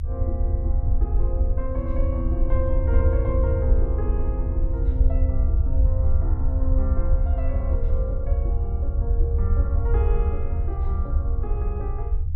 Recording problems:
low-frequency rumble; below 74 Hz, SNR -9 dB

